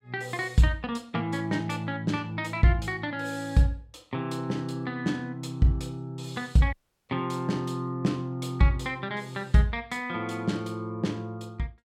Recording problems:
dropout; at 6.5 s

